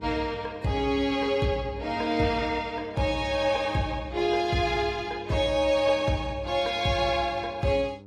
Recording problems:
codec artefacts; AAC, log-spectral distance 2 dB, nothing above 12.3 kHz
hum; 50 Hz, harmonics up to 1 kHz, SNR 22 dB

